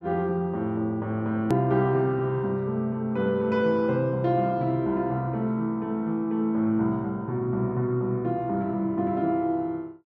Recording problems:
click at an edit; at 1.5 s

